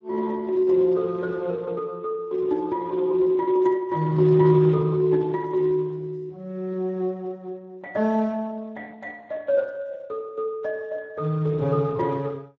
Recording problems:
lossy compression; Speex, log-spectral distance 2 dB

